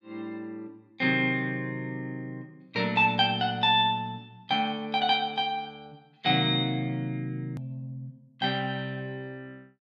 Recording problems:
edit click; at 7.5 s

